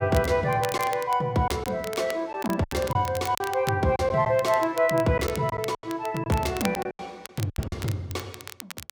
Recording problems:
crackle; vinyl, SNR 14 dB
lost packets; 8% of the sound replaced, filled with silence

